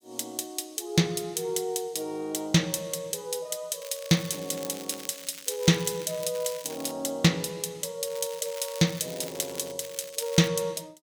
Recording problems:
crackle; from 4 to 7 s, from 8 to 9.5 s and at 10 s; loose cable, SNR 14 dB

